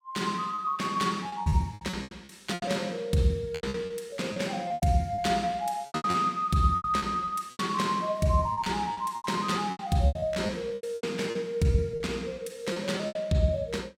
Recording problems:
lost packets; 15% of the sound replaced, filled with repeated pitch periods

